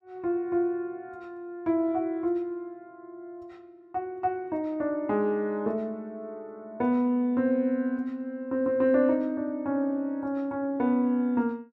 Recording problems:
none

